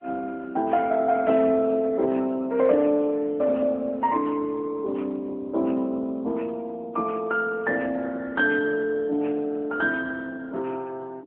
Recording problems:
telephone audio; 220 Hz to 3.6 kHz, AMR-NB

